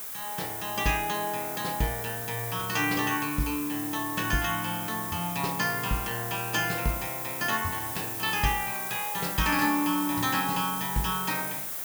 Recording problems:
background hiss; slope -1 dB per octave, SNR 3 dB

